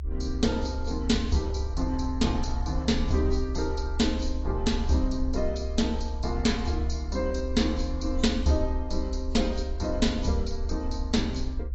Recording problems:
codec artefacts; AAC, log-spectral distance 3 dB, nothing above 7.8 kHz
rumble; below 68 Hz, SNR 4 dB

